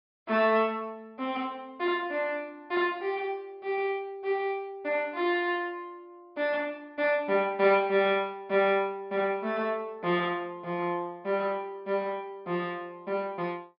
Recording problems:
low-pass filter; nothing above 5.5 kHz

